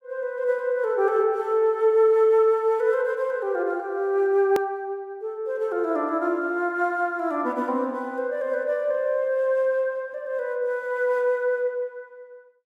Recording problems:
click at an edit; at 4.5 s

